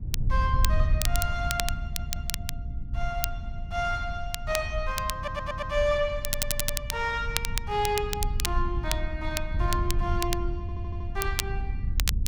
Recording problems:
low-frequency rumble; below 80 Hz, SNR 6 dB
wind on the microphone; below 78 Hz, SNR 3 dB
crackling; vinyl, SNR 2 dB
stutter; 4 times, first at 2 s

